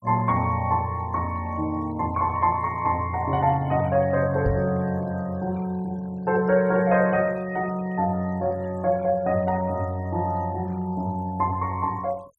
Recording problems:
denoising artefacts; signal-to-artefact ratio 26 dB
microphone bump; at 4.5 s; peak +2 dB vs average level

